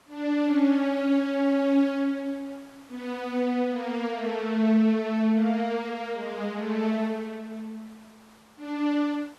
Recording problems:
hiss; SNR 29 dB

